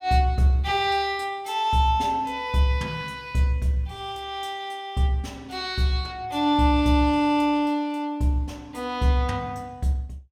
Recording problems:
none

